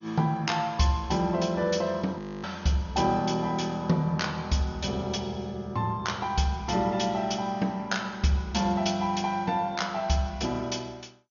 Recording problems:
lossy compression; MP2, log-spectral distance 3 dB, nothing above 6.7 kHz
frozen audio; at 2 s

